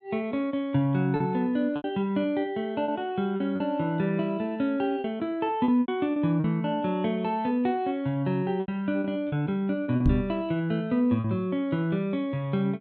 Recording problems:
packet loss; 6% of the sound replaced, filled with repeated pitch periods
microphone thump; at 10 s; peak +6 dB vs average level

